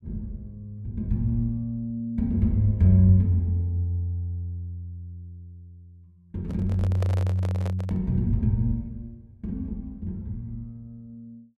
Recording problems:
handling noise; from 6.5 to 8 s; peak -6 dB vs average level

